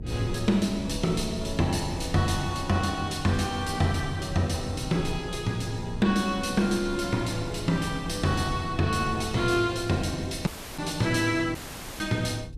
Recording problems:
low-frequency rumble; below 140 Hz, SNR 13 dB
dropout; at 10 s and at 12 s

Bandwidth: 14 kHz